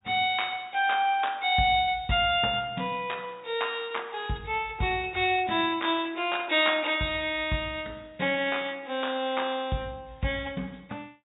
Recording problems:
low-pass filter; nothing above 4 kHz

